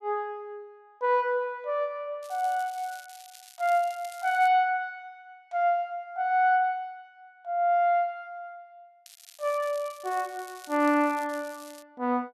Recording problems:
crackle; from 2 to 4.5 s, from 9 to 11 s and at 11 s; loose cable, SNR 22 dB

